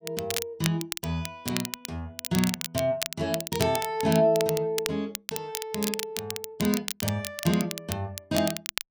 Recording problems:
crackling; vinyl, SNR 5 dB

